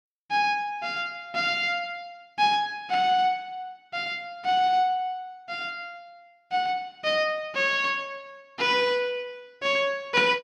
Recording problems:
none

